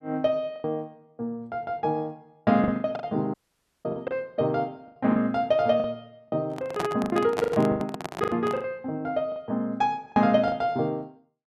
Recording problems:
packet loss; 11% of the sound replaced, filled with the last packet
audio cutting out; at 3.5 s for 0.5 s
microphone handling noise; from 6.5 to 8.5 s; peak +1 dB vs average level

